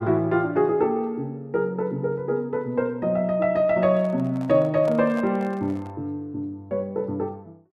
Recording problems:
microphone handling noise; from 4 to 6 s; peak -10 dB vs average level

